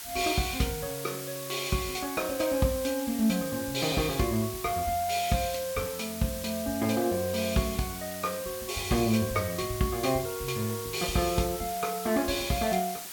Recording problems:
hiss; slope +2 dB per octave, SNR 8 dB

